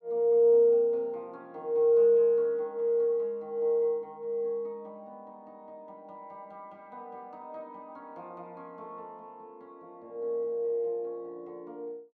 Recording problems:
none

